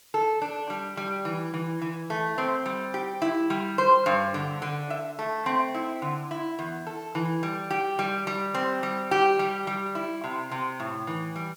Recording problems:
hiss; slope +1 dB per octave, SNR 27 dB

